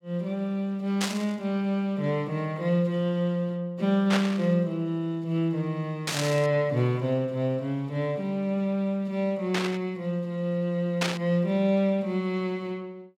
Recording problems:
static burst; 5 times, first at 1 s; peak +4 dB vs average level

